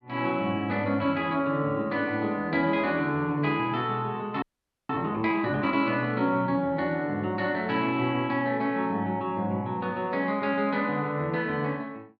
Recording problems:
frozen audio; at 4.5 s

